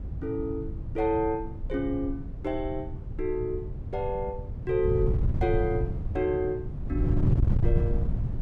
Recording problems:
wind noise; below 130 Hz, SNR 0 dB

